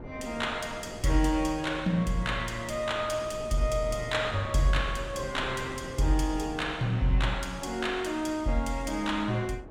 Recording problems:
wind noise; below 460 Hz, SNR 15 dB

